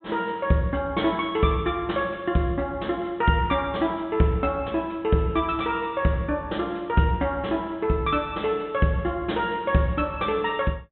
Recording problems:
treble missing; nothing above 3.7 kHz

